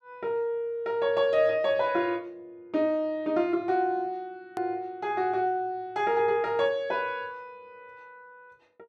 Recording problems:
edit click; at 4.5 s

